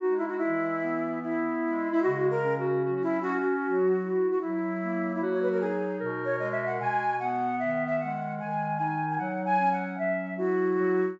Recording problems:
treble cut off; nothing above 8 kHz

